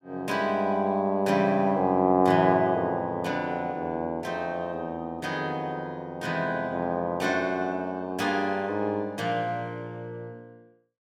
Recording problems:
none

